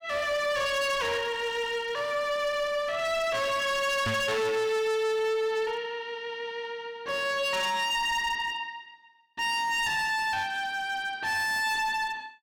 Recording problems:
distorted audio; hard clipping, uneven, signal-to-distortion ratio 6 dB
knock on the microphone; at 4 s; peak +1 dB vs average level

